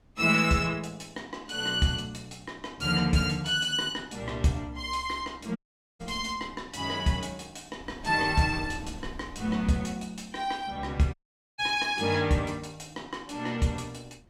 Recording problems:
wind noise; below 230 Hz, SNR 20 dB
audio cutting out; at 5.5 s and at 11 s

